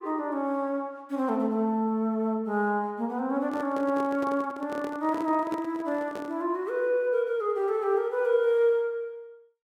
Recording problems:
handling noise; from 3.5 to 6.5 s; peak -5 dB vs average level

